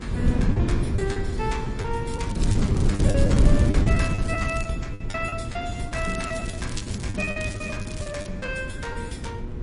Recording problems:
codec artefacts; MP3, log-spectral distance 3 dB, nothing above 10.4 kHz
electrical hum; 60 Hz, harmonics up to 1.4 kHz, SNR 11 dB
wind noise; below 170 Hz, SNR -4 dB
lost packets; 12% of the sound replaced, filled with the last packet
crackle; from 2 to 4.5 s and from 6 to 8.5 s; loose cable, SNR 10 dB

